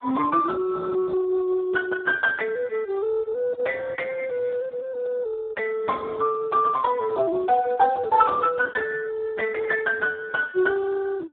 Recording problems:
telephone audio; 110 Hz to 2 kHz, Speex

